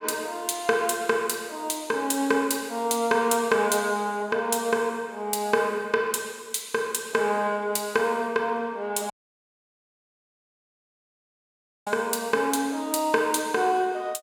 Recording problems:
audio cutting out; at 9 s for 3 s

